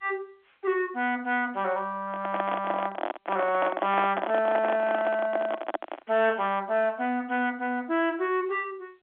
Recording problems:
phone line; 280 Hz to 3.5 kHz, G.711
distortion; soft clipping, signal-to-distortion ratio 13 dB
microphone handling noise; from 2 to 6 s; peak +3 dB vs average level

